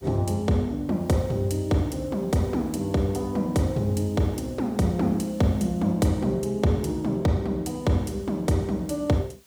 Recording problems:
background hiss; slope 0 dB per octave, SNR 30 dB

